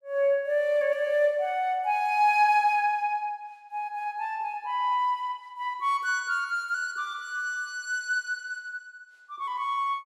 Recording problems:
none

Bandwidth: 16 kHz